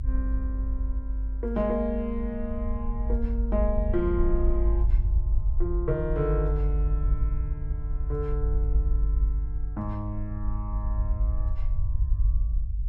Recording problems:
rumble; below 54 Hz, strongest tone 50 Hz, SNR -3 dB

